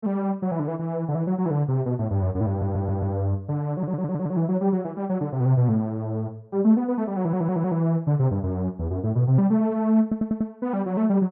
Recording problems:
stutter; 4 times, first at 2.5 s

